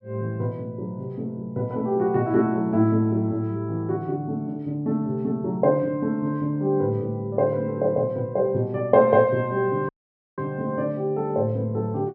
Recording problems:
audio cutting out; at 10 s

